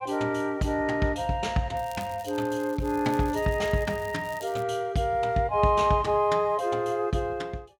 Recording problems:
crackling; from 2 to 4.5 s; loose cable, SNR 22 dB

